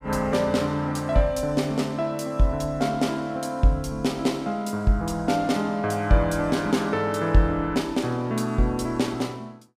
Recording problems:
none

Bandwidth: 15.5 kHz